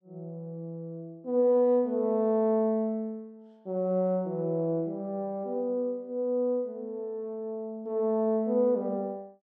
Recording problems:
none

